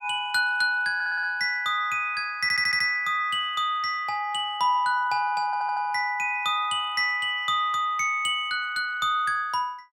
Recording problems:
stutter; at 1 s, at 2.5 s and at 5.5 s

